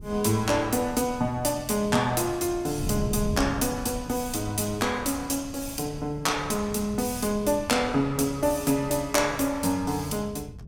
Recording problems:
wind on the microphone; below 160 Hz, SNR 13 dB

